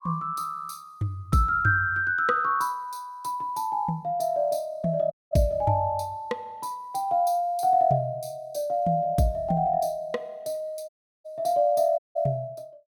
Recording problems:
dropout; at 5 s, at 11 s and at 12 s

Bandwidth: 17 kHz